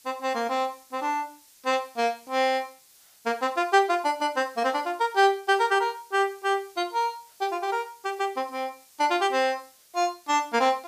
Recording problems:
hiss; slope +2 dB per octave, SNR 27 dB

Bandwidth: 15 kHz